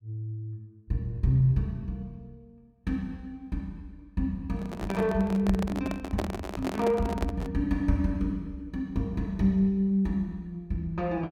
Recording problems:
microphone handling noise; from 4.5 to 7.5 s; peak +2 dB vs average level

